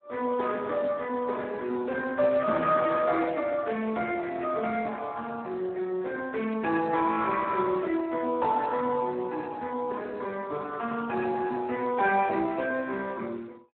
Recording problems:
telephone audio; 220 Hz to 3 kHz, Speex

